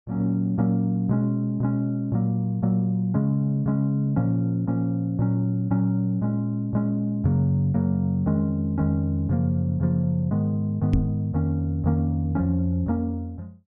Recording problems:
knock on the microphone; at 11 s; peak +5 dB vs average level

